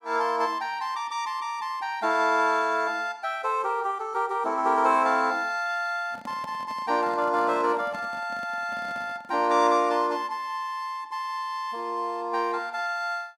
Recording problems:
microphone handling noise; from 6 to 9.5 s; peak -11 dB vs average level

